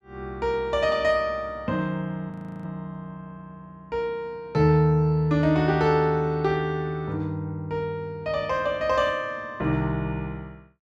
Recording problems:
audio freezing; at 2.5 s

